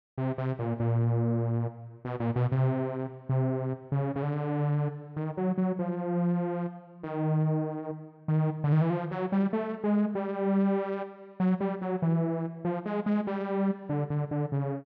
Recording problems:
none

